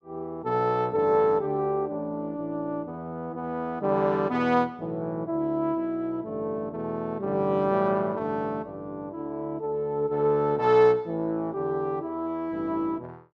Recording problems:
none

